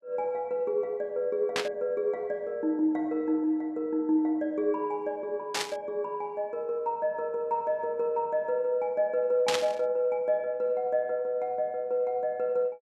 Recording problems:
static burst; at 1.5 s, at 5.5 s and at 9.5 s; peak +4 dB vs average level

